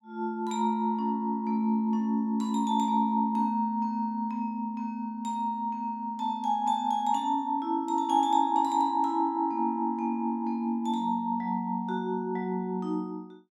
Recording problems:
none

